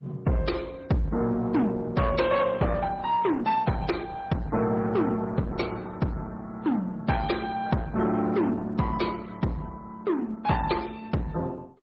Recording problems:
codec artefacts; MP3, then Opus, log-spectral distance 2 dB
distorted audio; soft clipping, signal-to-distortion ratio 10 dB

